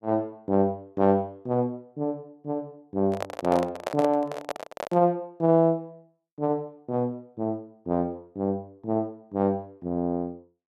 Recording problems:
handling noise; from 3 to 5 s; peak +1 dB vs average level

